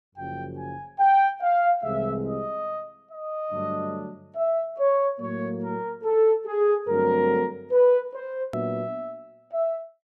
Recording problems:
hard cut with a click; at 8.5 s

